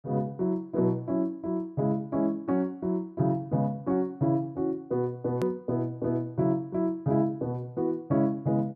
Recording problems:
hard cut with a click; at 5.5 s

